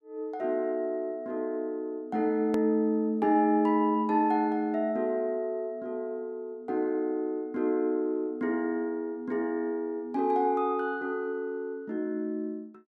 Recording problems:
edit click; at 2.5 s

